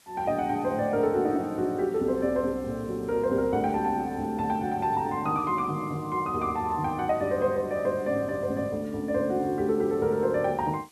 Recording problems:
hiss; slope 0 dB per octave, SNR 28 dB

